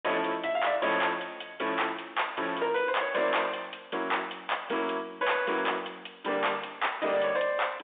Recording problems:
phone line; 280 Hz to 3.6 kHz, G.711
distortion; hard clipping, signal-to-distortion ratio 12 dB

